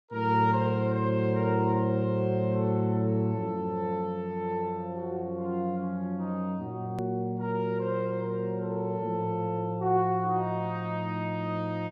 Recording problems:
click at an edit; at 7 s

